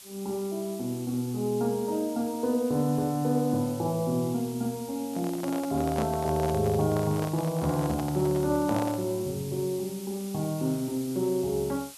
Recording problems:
hiss; SNR 16 dB
microphone handling noise; from 5 to 9 s; peak -2 dB vs average level

